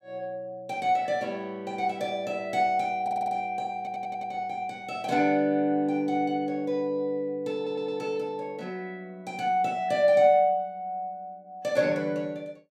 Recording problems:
audio stuttering; at 3 s, at 4 s and at 7.5 s

